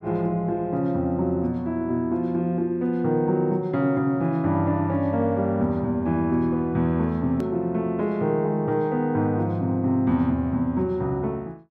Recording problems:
hard cut with a click; at 7.5 s

